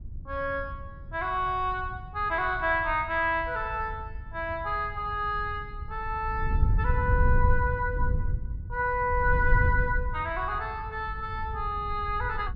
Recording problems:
wind noise; below 84 Hz, SNR 4 dB

